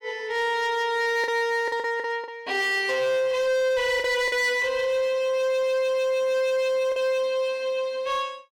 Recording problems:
distortion; hard clipping, signal-to-distortion ratio 12 dB
lost packets; 4% of the sound replaced, filled with the last packet

